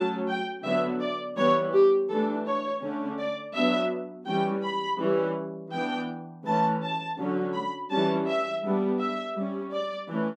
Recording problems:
none

